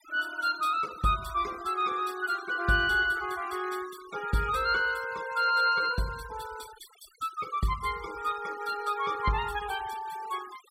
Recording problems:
noise reduction artefacts; signal-to-artefact ratio 18 dB

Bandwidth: 16 kHz